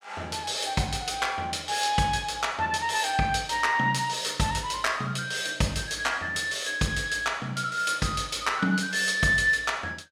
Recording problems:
none

